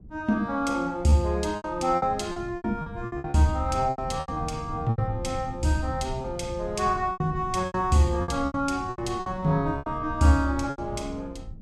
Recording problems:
wind noise; below 150 Hz, SNR 13 dB
packet loss; 12% of the sound replaced, filled with repeated pitch periods

